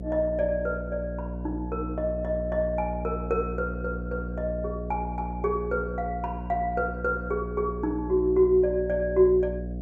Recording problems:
electrical hum; 60 Hz, harmonics up to 720 Hz, SNR 7 dB

